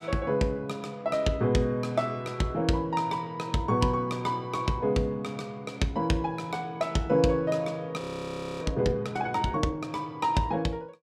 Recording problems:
audio freezing; at 8 s for 0.5 s

